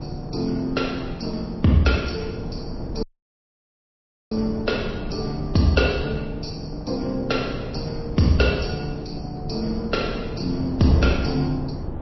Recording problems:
lossy codec; MP3, log-spectral distance 4 dB, nothing above 5.7 kHz
wind on the microphone; below 300 Hz, SNR 8 dB
audio cutting out; at 3 s for 1.5 s

